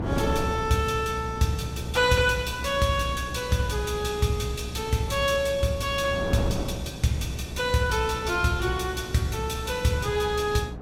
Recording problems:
hum; 60 Hz, harmonics up to 720 Hz, SNR 14 dB
wind on the microphone; below 450 Hz, SNR 12 dB

